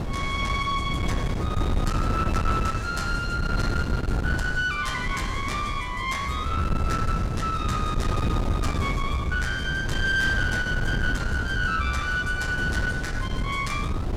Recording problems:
distortion; soft clipping, signal-to-distortion ratio 11 dB
wind noise; below 230 Hz, SNR 2 dB

